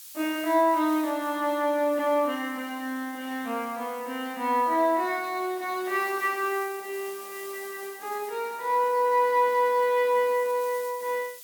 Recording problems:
background hiss; SNR 18 dB

